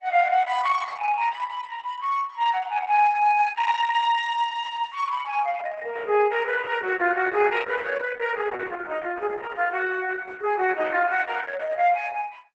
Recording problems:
lossy compression; Opus, log-spectral distance 4 dB, nothing above 8 kHz

